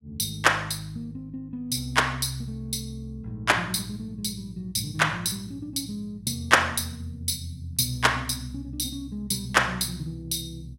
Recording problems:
none

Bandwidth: 16 kHz